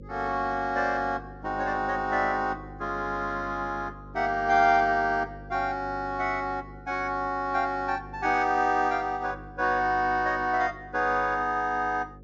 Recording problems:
treble cut off; nothing above 8 kHz
hum; 50 Hz, harmonics up to 550 Hz, SNR 19 dB

